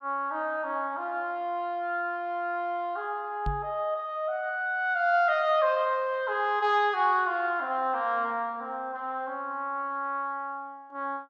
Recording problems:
knock on the microphone; at 3.5 s; peak -1 dB vs average level

